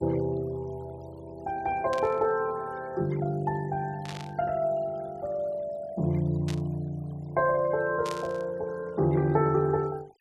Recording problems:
denoising artefacts; signal-to-artefact ratio 24 dB
static burst; 4 times, first at 2 s; peak -6 dB vs average level

